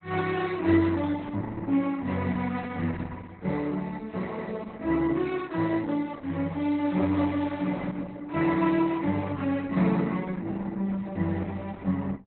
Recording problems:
lossy codec; MP2, then Opus, log-spectral distance 3 dB, nothing above 4 kHz

